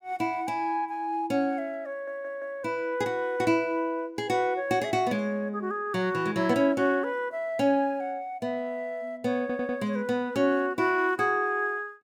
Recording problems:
audio stuttering; at 2 s and at 9.5 s

